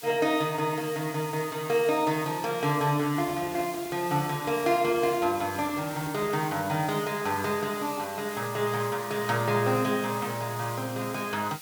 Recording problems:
hiss; slope +2 dB per octave, SNR 13 dB
microphone handling noise; from 3 to 6.5 s; peak -10 dB vs average level

